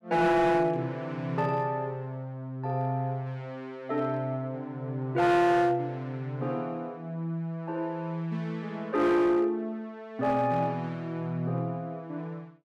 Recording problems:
distorted audio; hard clipping, signal-to-distortion ratio 10 dB

